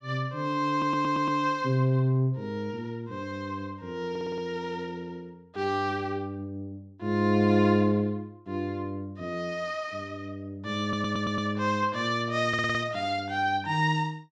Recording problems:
audio stuttering; 4 times, first at 0.5 s

